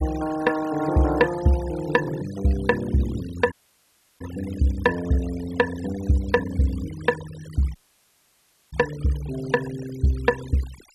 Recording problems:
denoising artefacts; signal-to-artefact ratio 16 dB
audio cutting out; at 3.5 s for 0.5 s and at 8 s for 1 s

